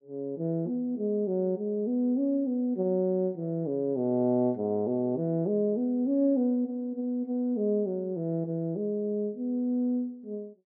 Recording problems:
none

